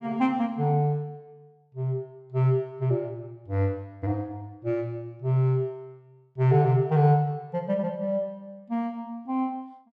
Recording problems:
none

